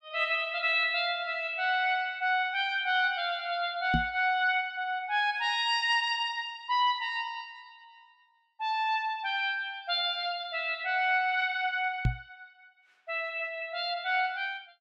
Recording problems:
knock on the microphone; at 4 s and at 12 s; peak +5 dB vs average level

